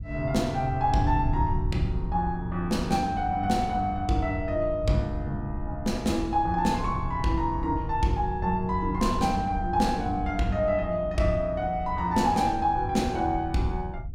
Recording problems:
wind noise; below 98 Hz, SNR 8 dB

